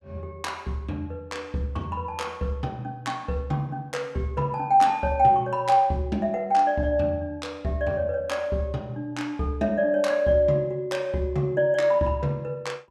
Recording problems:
none

